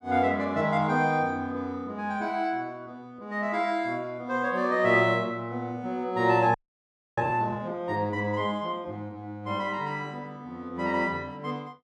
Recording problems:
frozen audio; at 6.5 s for 0.5 s

